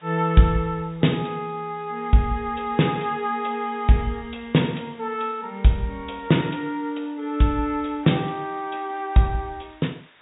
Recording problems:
treble cut off; nothing above 4 kHz
hiss; SNR 30 dB

